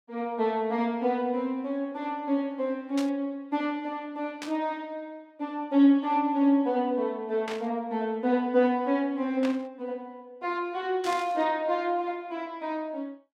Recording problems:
static burst; 5 times, first at 3 s; peak -5 dB vs average level

